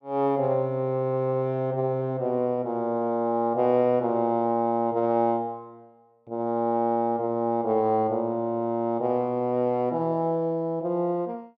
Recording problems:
none

